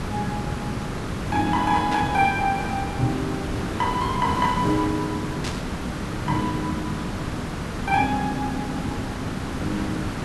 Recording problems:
background hiss; slope -6 dB per octave, SNR 3 dB
burst of static; at 2 s and at 5.5 s; peak -2 dB vs average level

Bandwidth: 12 kHz